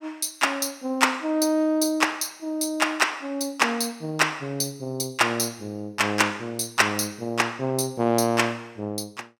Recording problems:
none

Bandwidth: 17 kHz